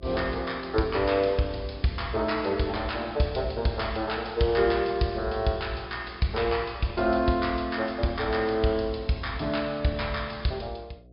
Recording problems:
treble missing; nothing above 5.5 kHz
hum; 60 Hz, harmonics up to 720 Hz, SNR 23 dB

